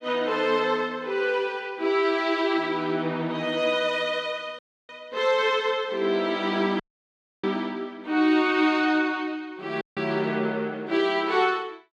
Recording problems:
dropout; at 4.5 s, at 7 s for 0.5 s and at 10 s

